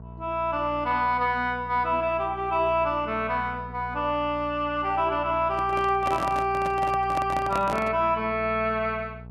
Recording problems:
hum; 60 Hz, harmonics up to 900 Hz, SNR 16 dB
microphone handling noise; from 5.5 to 8 s; peak -2 dB vs average level

